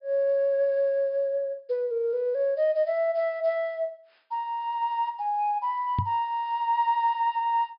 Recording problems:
treble missing; nothing above 5.5 kHz
knock on the microphone; at 6 s; peak +3 dB vs average level

